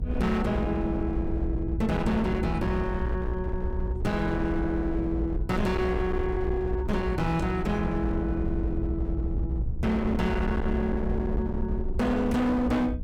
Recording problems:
distorted audio; hard clipping, uneven, signal-to-distortion ratio 8 dB
hum; 60 Hz, harmonics up to 720 Hz, SNR 13 dB
rumble; below 72 Hz, SNR 4 dB

